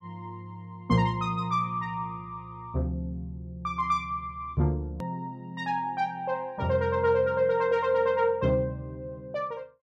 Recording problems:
click at an edit; at 5 s

